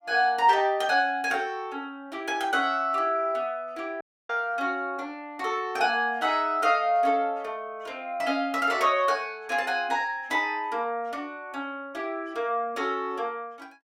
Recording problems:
audio cutting out; at 4 s

